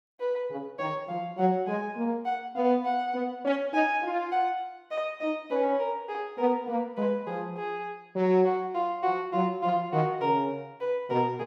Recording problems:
none

